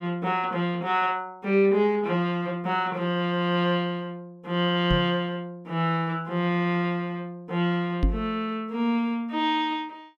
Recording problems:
microphone thump; at 5 s and at 8 s; peak +5 dB vs average level

